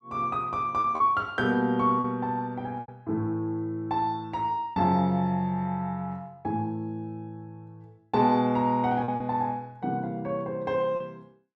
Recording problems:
lost packets; 3% of the sound replaced, filled with repeated pitch periods

